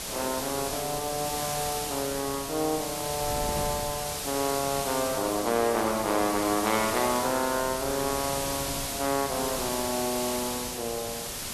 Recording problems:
hiss; slope -1 dB per octave, SNR 3 dB
wind noise; below 330 Hz, SNR 16 dB

